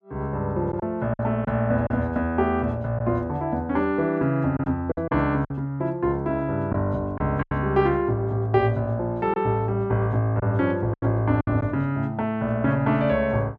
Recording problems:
packet loss; 5% of the sound replaced, filled with silence

